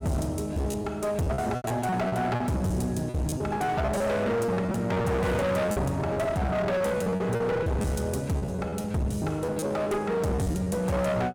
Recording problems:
distorted audio; hard clipping, uneven, signal-to-distortion ratio 6 dB
lost packets; 12% of the sound replaced, filled with repeated pitch periods

